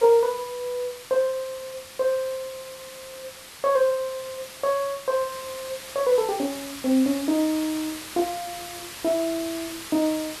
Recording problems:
background hiss; slope 0 dB per octave, SNR 12 dB

